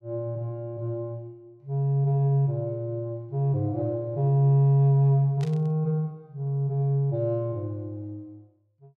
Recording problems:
burst of static; at 5.5 s; peak -14 dB vs average level

